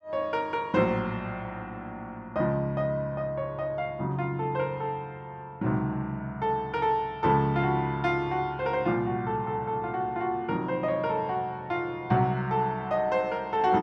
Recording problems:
none

